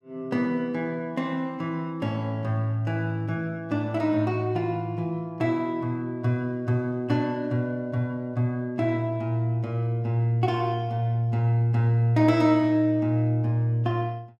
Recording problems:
none

